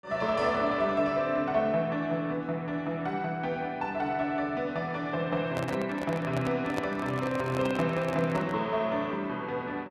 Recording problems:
handling noise; from 5.5 to 8.5 s; peak 0 dB vs average level

